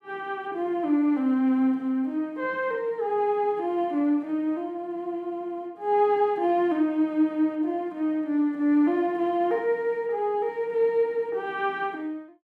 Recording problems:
none

